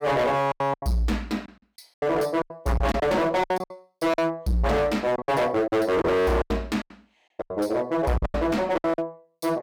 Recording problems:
distorted audio; hard clipping, signal-to-distortion ratio 7 dB
packet loss; 14% of the sound replaced, filled with silence

